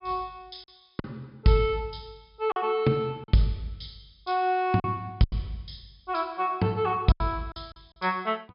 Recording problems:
treble missing; nothing above 5.5 kHz
packet loss; 6% of the sound replaced, filled with silence

